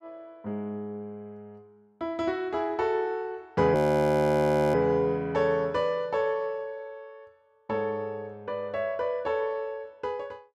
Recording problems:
audio freezing; at 4 s for 1 s

